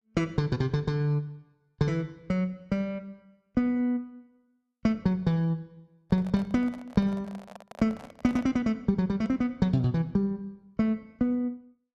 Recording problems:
microphone handling noise; from 6 to 8.5 s; peak -9 dB vs average level

